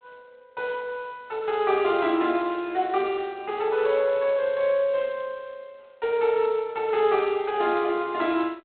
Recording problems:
phone line; 170 Hz to 3.6 kHz, G.726

